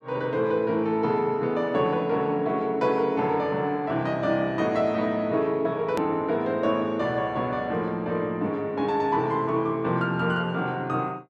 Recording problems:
edit click; at 6 s

